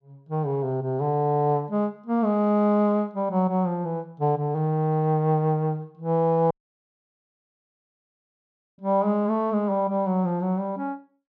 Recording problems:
dropout; at 6.5 s for 2.5 s

